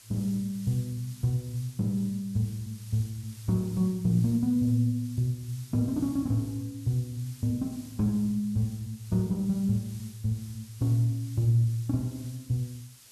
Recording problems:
hiss; SNR 21 dB

